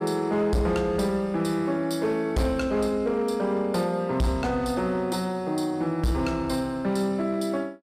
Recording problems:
distortion; hard clipping, signal-to-distortion ratio 12 dB

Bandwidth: 15 kHz